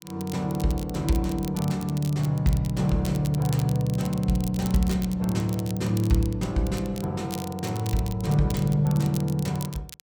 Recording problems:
crackle; vinyl, SNR 16 dB

